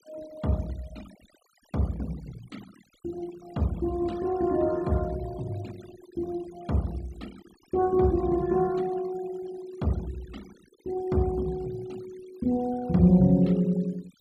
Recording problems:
noise reduction artefacts; signal-to-artefact ratio 22 dB

